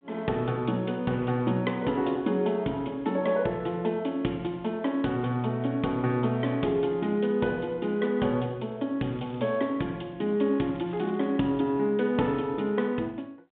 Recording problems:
telephone audio; 150 Hz to 3.7 kHz, G.726
crackling; at 9 s and at 11 s; loose cable, SNR 29 dB

